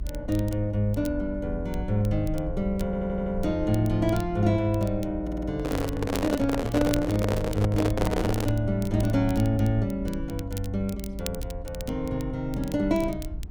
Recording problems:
rumble; below 72 Hz, SNR 10 dB
crackle; vinyl, SNR 18 dB
audio stuttering; at 3 s and at 5 s
microphone handling noise; from 5.5 to 8.5 s; peak +3 dB vs average level

